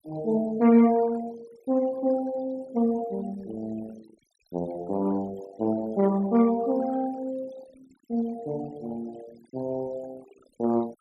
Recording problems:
denoising artefacts; signal-to-artefact ratio 21 dB

